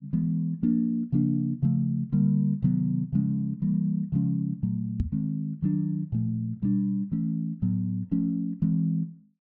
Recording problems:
microphone bump; at 5 s; peak +3 dB vs average level

